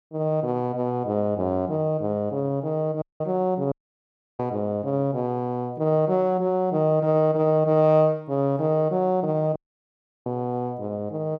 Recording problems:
dropout; at 3 s, at 3.5 s for 0.5 s and at 9.5 s for 0.5 s

